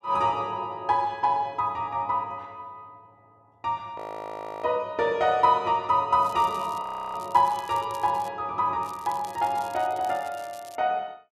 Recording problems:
audio freezing; at 4 s for 0.5 s and at 7 s
crackle; from 6 to 8.5 s and from 9 to 11 s; loose cable, SNR 23 dB

